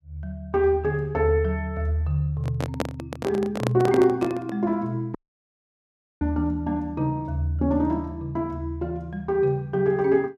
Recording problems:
microphone handling noise; from 2.5 to 4.5 s; peak +3 dB vs average level
audio cutting out; at 5 s for 1 s

